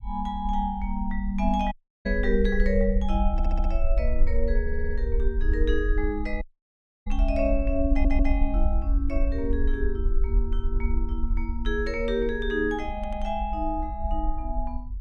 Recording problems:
rumble; below 52 Hz, SNR 0 dB
dropout; at 1.5 s and at 6.5 s for 0.5 s
stutter; 4 times, first at 3.5 s

